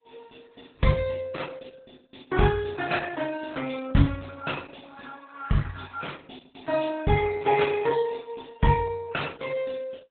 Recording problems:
codec artefacts; AAC, then Opus, log-spectral distance 7 dB, nothing above 3.9 kHz

